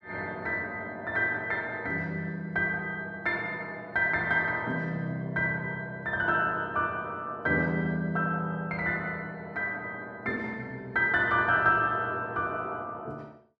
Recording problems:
none

